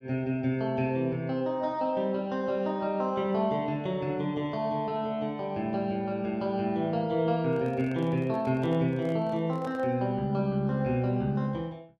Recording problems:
microphone handling noise; from 7.5 to 10 s; peak -9 dB vs average level

